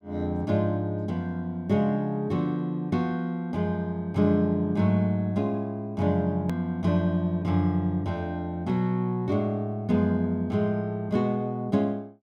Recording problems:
edit click; at 6.5 s

